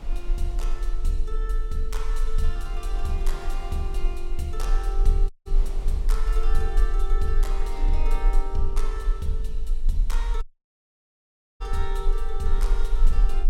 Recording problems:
electrical hum; 50 Hz, harmonics up to 300 Hz, SNR 21 dB
low-frequency rumble; below 36 Hz, strongest tone 20 Hz, SNR -6 dB
wind noise; below 940 Hz, SNR 16 dB
audio cutting out; at 5.5 s and at 10 s for 1 s

